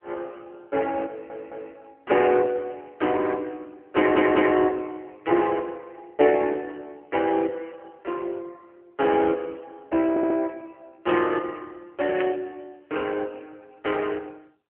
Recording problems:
telephone audio; 280 Hz to 2.6 kHz, AMR-NB
audio stuttering; at 1 s, at 4 s and at 10 s
static burst; at 12 s; peak -7 dB vs average level

